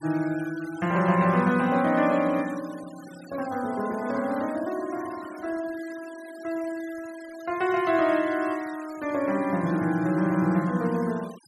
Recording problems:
noise reduction artefacts; signal-to-artefact ratio 20 dB

